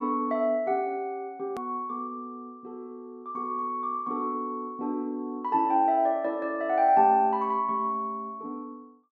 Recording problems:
hard cut with a click; at 1.5 s

